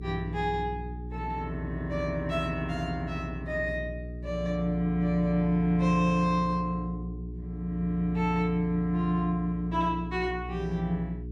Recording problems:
hum; 60 Hz, harmonics up to 420 Hz, SNR 9 dB

